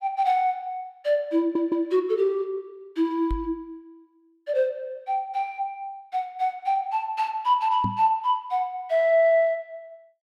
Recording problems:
stutter; at 1.5 s
microphone thump; at 3.5 s and at 8 s; peak -1 dB vs average level

